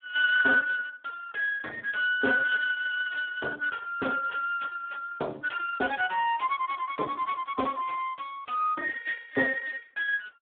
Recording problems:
telephone audio; 260 Hz to 3.5 kHz, Speex

